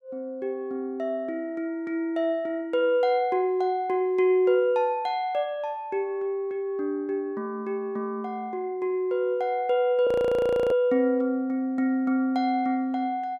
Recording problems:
frozen audio; at 10 s for 0.5 s

